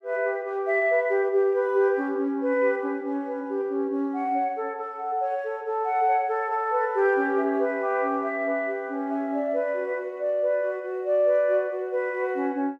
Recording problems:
none

